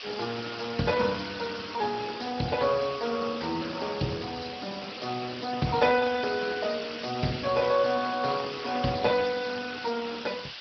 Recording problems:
treble cut off; nothing above 5.5 kHz
codec artefacts; Speex, log-spectral distance 19 dB
hiss; SNR 9 dB

